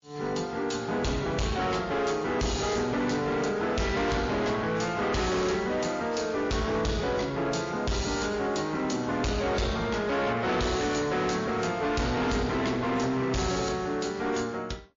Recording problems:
lossy compression; MP3, log-spectral distance 5 dB, nothing above 6.7 kHz
distorted audio; hard clipping, uneven, signal-to-distortion ratio 7 dB

